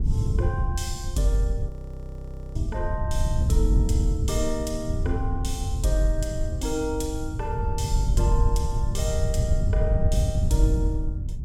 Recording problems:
wind on the microphone; below 100 Hz, SNR -2 dB
audio freezing; at 1.5 s for 1 s

